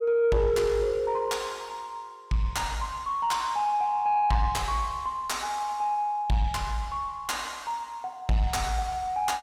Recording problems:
distortion; soft clipping, signal-to-distortion ratio 11 dB

